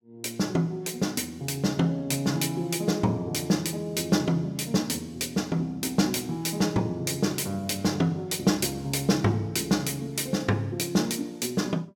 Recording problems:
none

